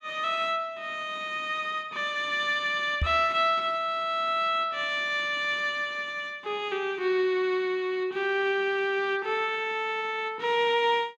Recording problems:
microphone thump; at 3 s; peak +2 dB vs average level

